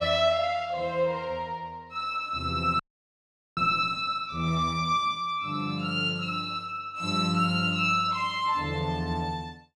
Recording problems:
audio freezing; at 3 s for 1 s

